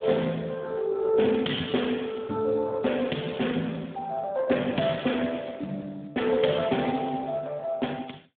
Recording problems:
phone line; 130 Hz to 3.6 kHz, Speex

